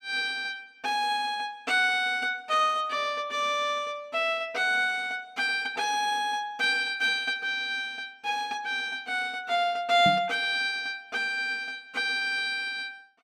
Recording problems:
knock on the microphone; at 10 s; peak -1 dB vs average level

